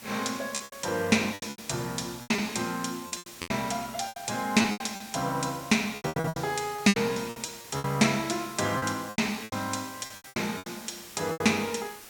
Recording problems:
hiss; slope -1 dB per octave, SNR 16 dB
packet loss; 16% of the sound replaced, filled with repeated pitch periods

